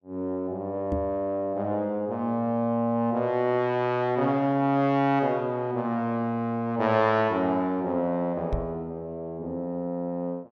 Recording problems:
knock on the microphone; at 1 s and at 8.5 s; peak +1 dB vs average level

